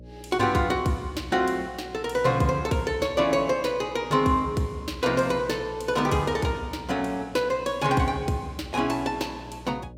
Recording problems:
hum; 60 Hz, harmonics up to 600 Hz, SNR 20 dB

